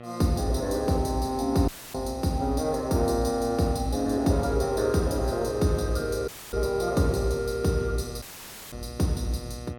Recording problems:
electrical hum; 60 Hz, harmonics up to 2.6 kHz, SNR 15 dB
dropout; at 1.5 s, at 6.5 s and at 8 s for 0.5 s

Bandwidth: 17 kHz